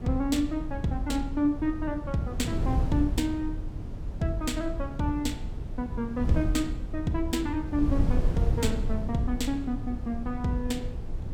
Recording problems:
wind on the microphone; below 100 Hz, SNR 3 dB

